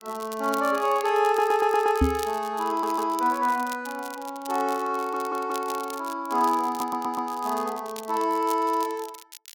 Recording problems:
crackling; vinyl, SNR 17 dB
stutter; 4 times, first at 1.5 s
knock on the microphone; at 2 s; peak +7 dB vs average level

